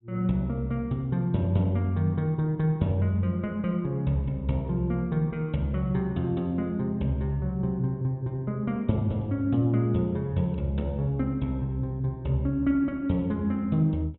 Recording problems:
treble cut off; nothing above 3.9 kHz

